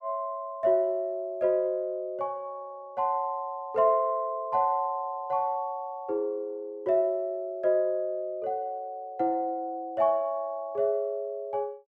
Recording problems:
none

